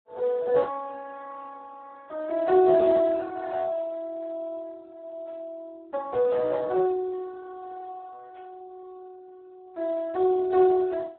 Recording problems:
phone line; 320 Hz to 2 kHz, Speex

